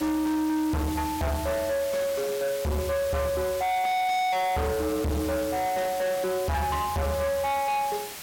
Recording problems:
distorted audio; hard clipping, uneven, signal-to-distortion ratio 6 dB
background hiss; slope 0 dB per octave, SNR 11 dB

